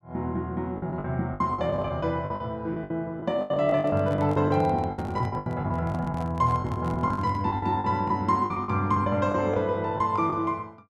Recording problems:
lost packets; 15% of the sound replaced, filled with the last packet
microphone handling noise; from 3.5 to 7.5 s; peak -11 dB vs average level

